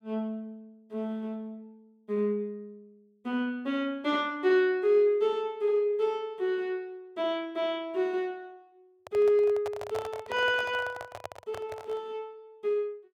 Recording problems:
microphone handling noise; from 9 to 12 s; peak -4 dB vs average level

